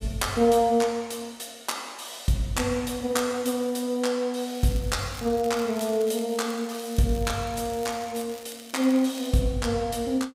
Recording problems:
crackling; from 4.5 to 9.5 s; loose cable, SNR 19 dB

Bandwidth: 15.5 kHz